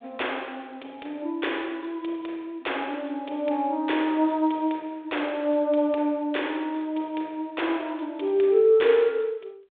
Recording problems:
telephone audio; 320 Hz to 3.7 kHz, G.726

